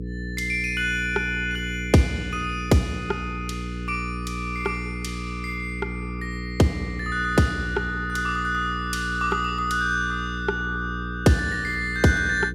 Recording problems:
hum; 60 Hz, harmonics up to 480 Hz, SNR 7 dB

